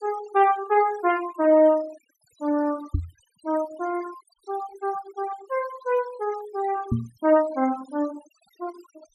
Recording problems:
denoising artefacts; signal-to-artefact ratio 19 dB
microphone thump; at 3 s and at 7 s; peak +3 dB vs average level

